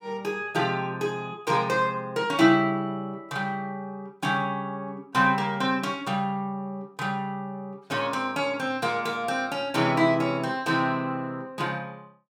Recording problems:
none

